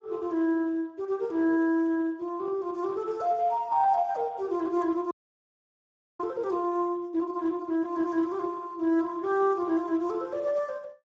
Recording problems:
lossy compression; Speex, log-spectral distance 2 dB
audio freezing; at 5 s for 1 s

